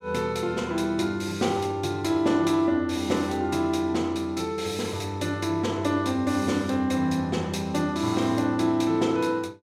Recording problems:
none

